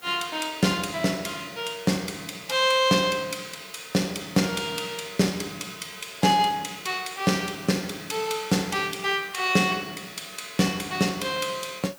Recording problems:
background hiss; slope -2 dB per octave, SNR 22 dB

